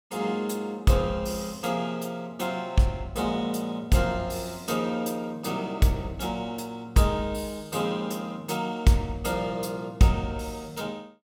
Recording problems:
none

